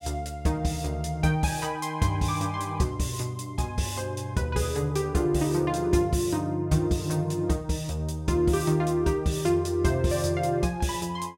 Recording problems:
none

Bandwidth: 16 kHz